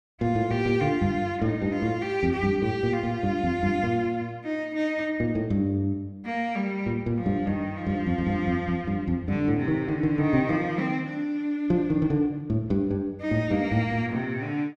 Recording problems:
none

